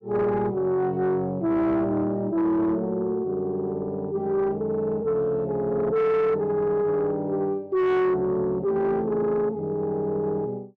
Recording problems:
distorted audio; soft clipping, signal-to-distortion ratio 10 dB

